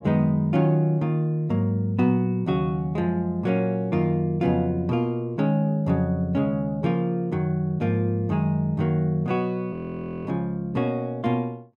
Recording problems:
frozen audio; at 9.5 s for 0.5 s

